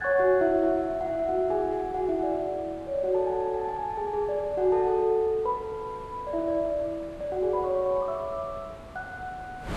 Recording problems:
wind on the microphone; below 820 Hz, SNR 20 dB

